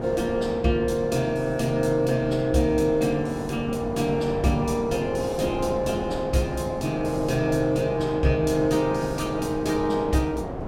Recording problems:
wind on the microphone; below 660 Hz, SNR 9 dB

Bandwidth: 16 kHz